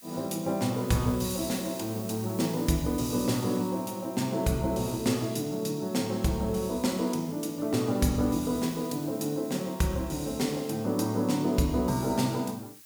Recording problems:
hiss; SNR 18 dB

